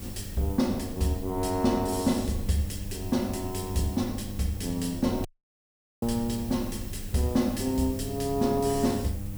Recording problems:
hum; 50 Hz, harmonics up to 800 Hz, SNR 11 dB
hiss; slope -2 dB per octave, SNR 16 dB
low-frequency rumble; below 98 Hz, SNR 14 dB
audio cutting out; at 5.5 s for 1 s

